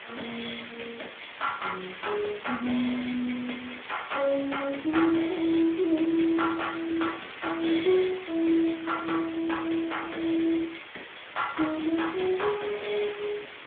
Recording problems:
phone line; 190 Hz to 3.7 kHz, Speex
background hiss; SNR 13 dB

